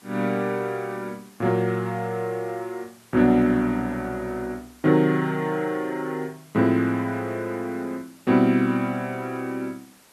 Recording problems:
background hiss; slope -2 dB per octave, SNR 28 dB

